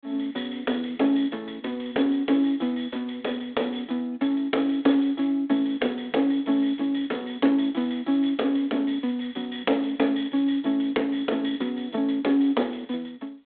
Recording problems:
telephone audio; 220 Hz to 3.4 kHz, G.726

